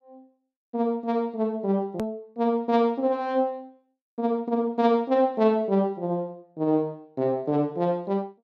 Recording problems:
hard cut with a click; at 2 s

